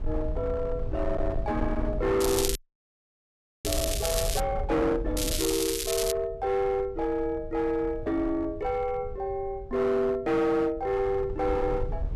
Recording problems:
distorted audio; hard clipping, uneven, signal-to-distortion ratio 11 dB
low-frequency rumble; below 82 Hz, SNR 9 dB
crackling; from 2 to 4.5 s and at 5 s; loose cable, SNR 3 dB
audio freezing; at 2.5 s for 1 s

